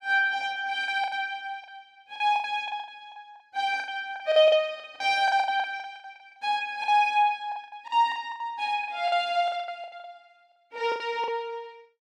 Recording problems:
packet loss; 17% of the sound replaced, filled with the last packet

